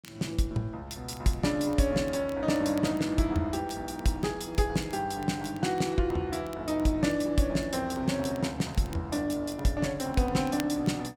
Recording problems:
crackling; vinyl, SNR 24 dB

